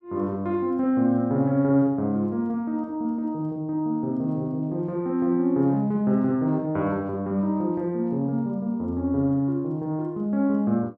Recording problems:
none

